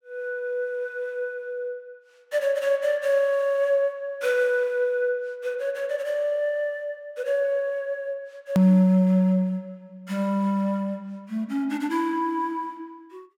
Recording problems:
hard cut with a click; at 8.5 s

